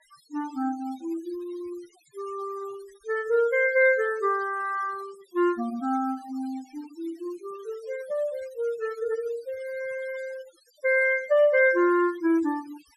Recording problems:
noise reduction artefacts; signal-to-artefact ratio 23 dB

